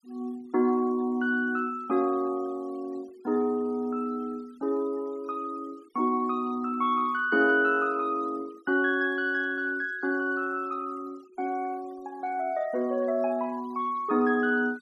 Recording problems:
noise reduction artefacts; signal-to-artefact ratio 26 dB

